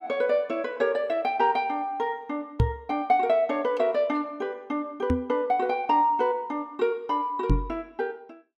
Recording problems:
microphone thump; at 2.5 s, at 5 s and at 7.5 s; peak +7 dB vs average level

